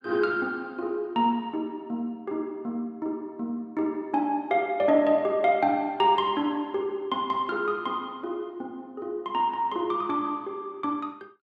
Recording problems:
none

